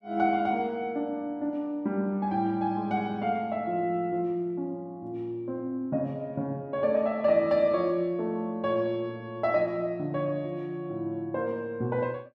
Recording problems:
none

